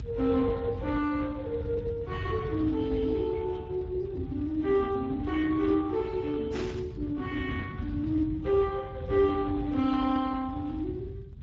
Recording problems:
lossy compression; AAC, then Speex, log-spectral distance 2 dB
rumble; below 140 Hz, SNR 10 dB
static burst; at 6.5 s; peak -8 dB vs average level

